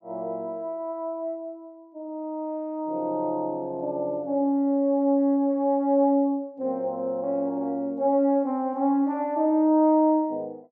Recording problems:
none

